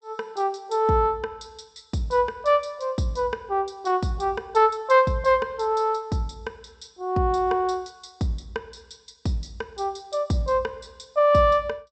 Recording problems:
low-pass filter; nothing above 8 kHz

